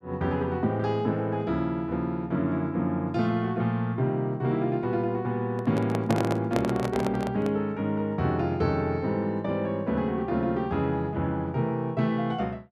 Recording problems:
handling noise; from 5.5 to 7.5 s; peak +2 dB vs average level

